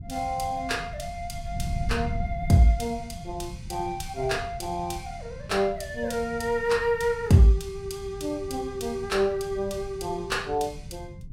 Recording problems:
wind on the microphone; below 140 Hz, SNR 12 dB

